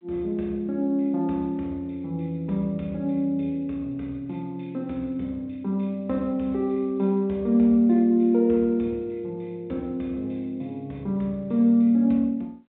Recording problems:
telephone audio; 190 Hz to 3.6 kHz, G.726

